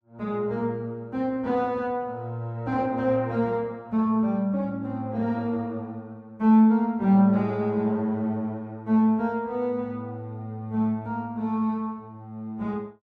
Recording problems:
none

